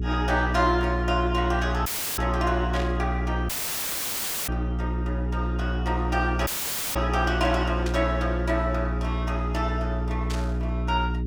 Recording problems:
hum; 60 Hz, harmonics up to 420 Hz, SNR 1 dB
audio cutting out; at 2 s, at 3.5 s for 1 s and at 6.5 s
static burst; at 2.5 s, at 8 s and at 10 s; peak -3 dB vs average level

